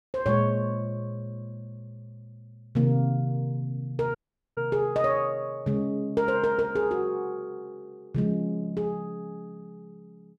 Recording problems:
audio cutting out; at 4 s

